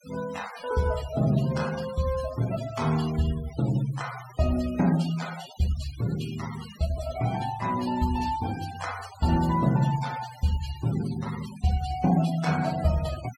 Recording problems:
noise reduction artefacts; signal-to-artefact ratio 14 dB

